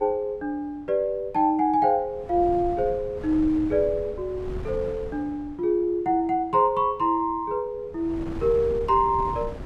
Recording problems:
wind on the microphone; below 270 Hz, SNR 14 dB

